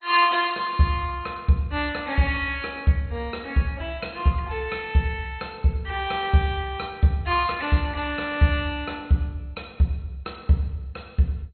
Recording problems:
lossy codec; MP2, log-spectral distance 3 dB, nothing above 4 kHz

